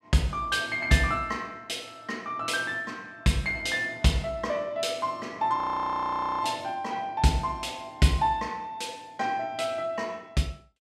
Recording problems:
audio freezing; at 5.5 s for 1 s

